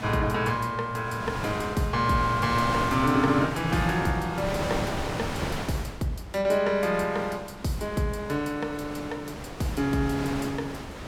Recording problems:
wind on the microphone; below 1.5 kHz, SNR 7 dB

